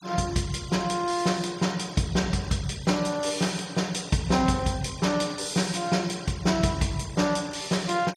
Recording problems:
denoising artefacts; signal-to-artefact ratio 20 dB

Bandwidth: 16 kHz